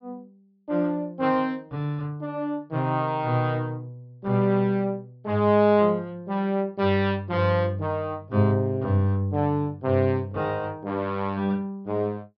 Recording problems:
treble missing; nothing above 5.5 kHz

